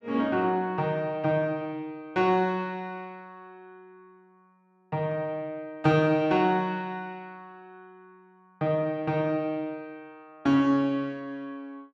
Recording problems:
none

